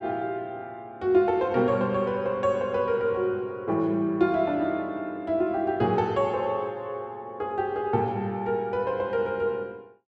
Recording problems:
none

